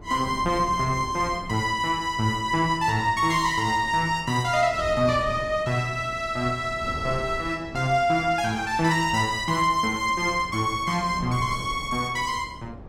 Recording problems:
wind on the microphone; below 320 Hz, SNR 17 dB

